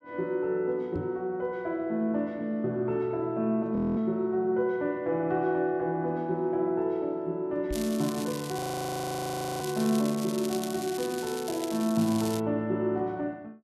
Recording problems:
knock on the microphone; at 1 s and at 7.5 s; peak -2 dB vs average level
frozen audio; at 4 s and at 8.5 s for 1 s
crackling; from 7.5 to 12 s; loose cable, SNR 11 dB

